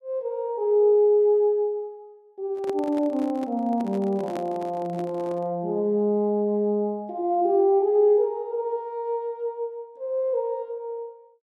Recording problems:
handling noise; from 2.5 to 5.5 s; peak -7 dB vs average level

